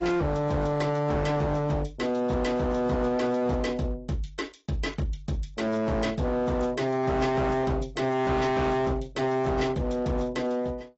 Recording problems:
codec artefacts; AAC, log-spectral distance 3 dB, nothing above 7.8 kHz
distortion; hard clipping, signal-to-distortion ratio 7 dB

